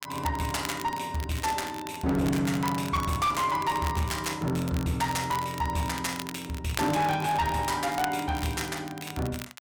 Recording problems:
distortion; hard clipping, uneven, signal-to-distortion ratio 10 dB
crackling; vinyl, SNR 12 dB

